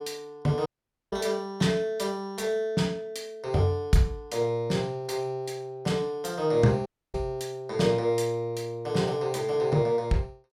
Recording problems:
dropout; at 0.5 s and at 7 s

